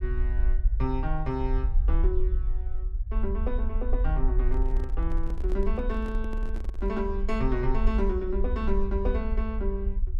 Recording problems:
low-frequency rumble; below 50 Hz, SNR -3 dB
microphone handling noise; from 4.5 to 7 s; peak -6 dB vs average level

